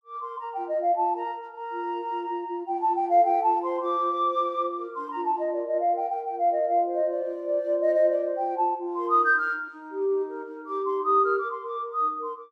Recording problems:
none

